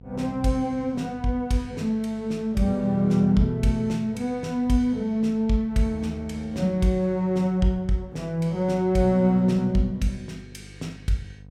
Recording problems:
hum; 50 Hz, harmonics up to 550 Hz, SNR 23 dB

